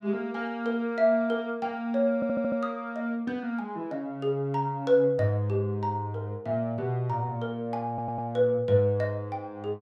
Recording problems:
audio stuttering; at 2 s and at 8 s

